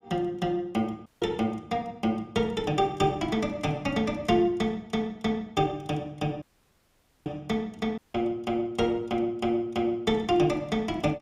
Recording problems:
audio cutting out; at 1 s, at 6.5 s for 1 s and at 8 s

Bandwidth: 15.5 kHz